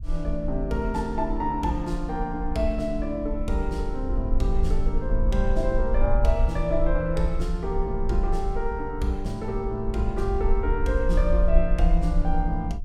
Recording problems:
low-frequency rumble; below 46 Hz, SNR 2 dB

